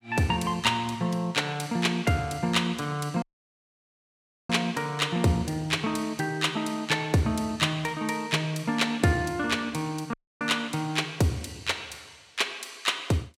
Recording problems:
dropout; at 3 s for 1.5 s and at 10 s

